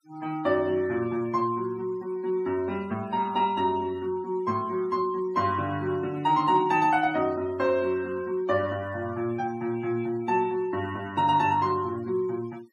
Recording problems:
noise reduction artefacts; signal-to-artefact ratio 23 dB

